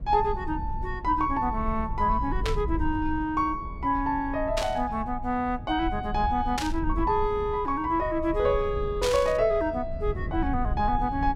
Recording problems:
rumble; below 80 Hz, SNR 9 dB
burst of static; 4 times, first at 2.5 s; peak +1 dB vs average level

